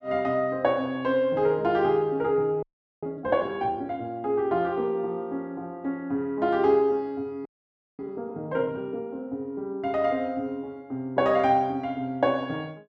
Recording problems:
audio freezing; at 2.5 s and at 7.5 s for 0.5 s

